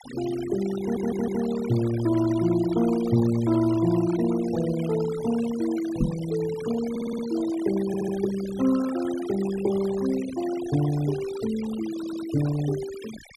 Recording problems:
denoising artefacts; signal-to-artefact ratio 15 dB
stutter; 4 times, first at 1 s
microphone thump; at 6 s; peak +5 dB vs average level

